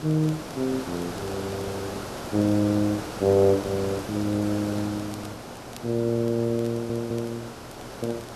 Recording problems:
hum; 60 Hz, harmonics up to 960 Hz, SNR 23 dB
background hiss; SNR 10 dB
crackle; vinyl, SNR 28 dB
audio stuttering; at 6.5 s

